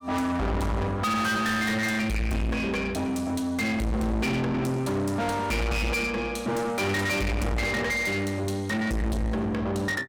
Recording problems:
distorted audio; soft clipping, signal-to-distortion ratio 6 dB

